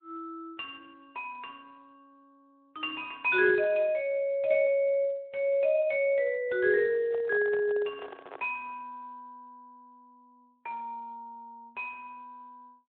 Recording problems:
phone line; 320 Hz to 3.8 kHz, Speex
microphone handling noise; from 7 to 8.5 s; peak -10 dB vs average level

